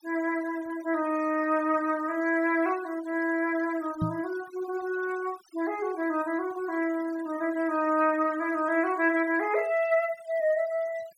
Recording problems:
denoising artefacts; signal-to-artefact ratio 20 dB
knock on the microphone; at 4 s; peak +3 dB vs average level

